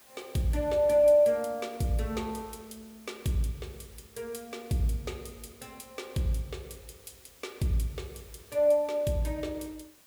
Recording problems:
hiss; slope -1 dB per octave, SNR 26 dB

